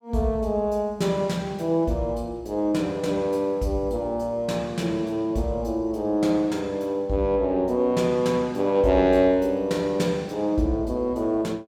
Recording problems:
none

